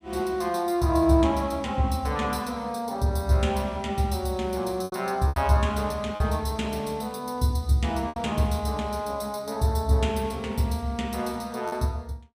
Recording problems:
packet loss; 3% of the sound replaced, filled with repeated pitch periods

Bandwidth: 15.5 kHz